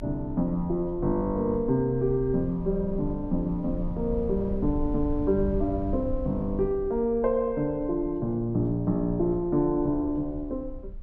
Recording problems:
rumble; below 72 Hz, SNR 12 dB

